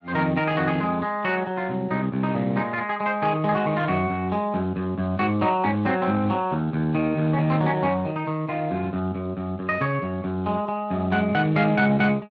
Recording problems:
lossy compression; Speex, log-spectral distance 2 dB

